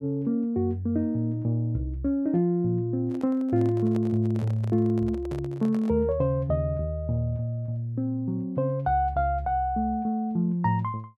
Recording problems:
handling noise; from 3 to 6 s; peak -10 dB vs average level

